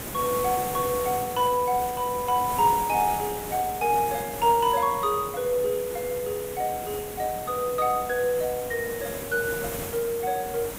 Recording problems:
hiss; slope -5 dB per octave, SNR 9 dB

